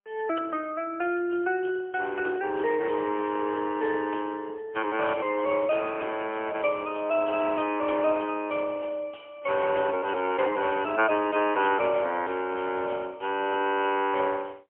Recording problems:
phone line; 280 Hz to 3.1 kHz, AMR-NB, then MP3

